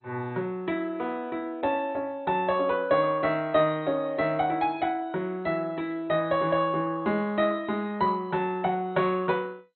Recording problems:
codec artefacts; MP2, log-spectral distance 2 dB, nothing above 3.8 kHz

